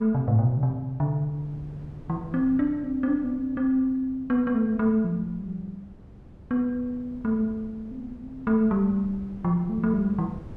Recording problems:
wind noise; below 230 Hz, SNR 20 dB

